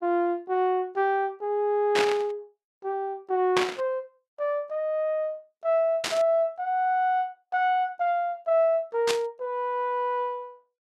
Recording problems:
burst of static; 4 times, first at 2 s; peak +4 dB vs average level

